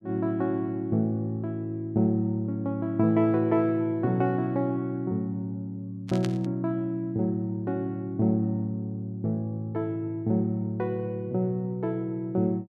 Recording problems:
static burst; at 6 s; peak -6 dB vs average level

